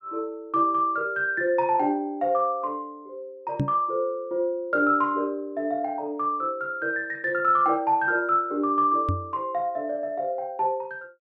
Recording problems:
microphone bump; at 3.5 s and at 9 s; peak +3 dB vs average level

